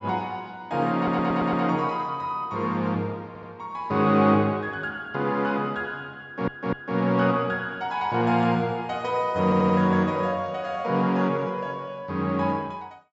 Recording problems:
treble cut off; nothing above 8 kHz
stutter; 4 times, first at 1 s

